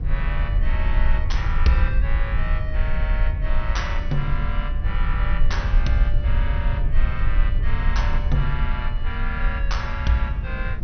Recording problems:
treble missing; nothing above 6.1 kHz
rumble; below 56 Hz, SNR -4 dB
wind noise; below 240 Hz, SNR 17 dB

